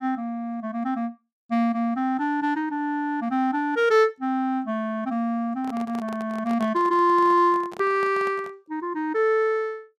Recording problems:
microphone handling noise; from 5.5 to 8.5 s; peak -9 dB vs average level

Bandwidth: 14 kHz